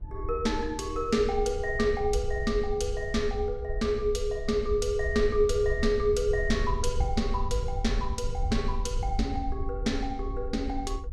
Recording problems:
wind on the microphone; below 66 Hz, SNR 6 dB

